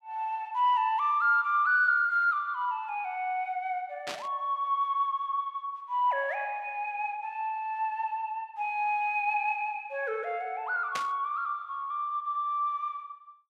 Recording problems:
burst of static; at 4 s and at 11 s; peak -2 dB vs average level

